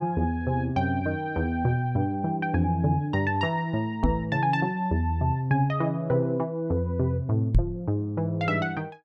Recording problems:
knock on the microphone; at 4 s and at 7.5 s; peak +7 dB vs average level

